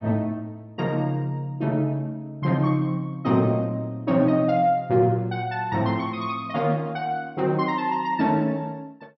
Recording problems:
treble cut off; nothing above 5.7 kHz

